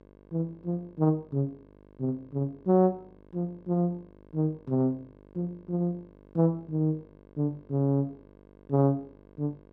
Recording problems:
electrical hum; 50 Hz, harmonics up to 1.6 kHz, SNR 26 dB

